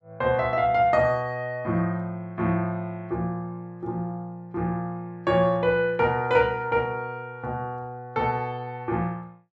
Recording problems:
none

